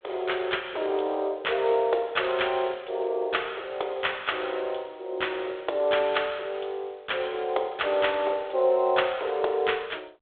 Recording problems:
phone line; 320 Hz to 3.6 kHz, G.726

